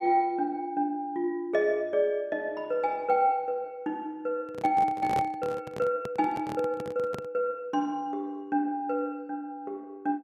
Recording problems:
microphone handling noise; from 4.5 to 7.5 s; peak -1 dB vs average level

